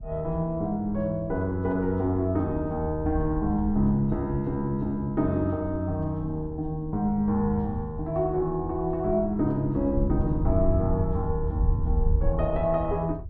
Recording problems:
wind on the microphone; below 78 Hz, SNR 8 dB

